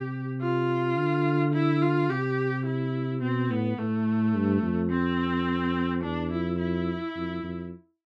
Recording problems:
none

